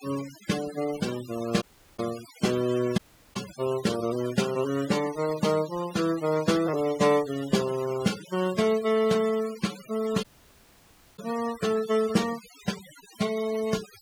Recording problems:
noise reduction artefacts; signal-to-artefact ratio 14 dB
dropout; at 1.5 s, at 3 s and at 10 s for 1 s

